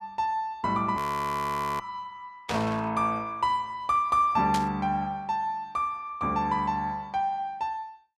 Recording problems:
frozen audio; at 1 s for 1 s
static burst; at 2.5 s and at 4.5 s; peak -1 dB vs average level

